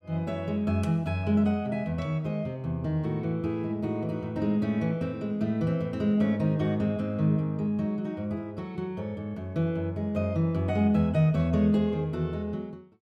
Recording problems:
none

